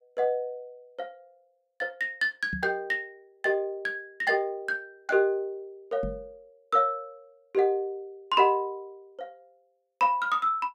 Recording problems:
microphone thump; at 2.5 s and at 6 s; peak -4 dB vs average level

